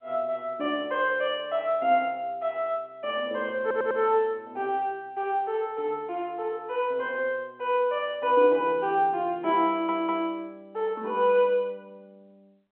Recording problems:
telephone audio; 260 Hz to 3.3 kHz, G.711
stutter; at 3.5 s and at 9.5 s

